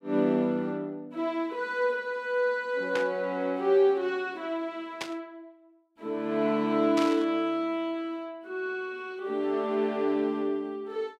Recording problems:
burst of static; at 3 s, at 5 s and at 7 s; peak -1 dB vs average level

